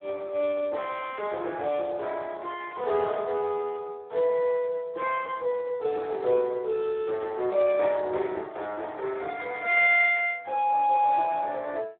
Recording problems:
telephone audio; 320 Hz to 2.9 kHz, Speex

